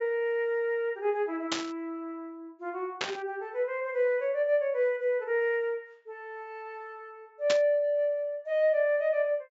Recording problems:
treble missing; nothing above 8 kHz
burst of static; at 1.5 s, at 3 s and at 7.5 s; peak +3 dB vs average level

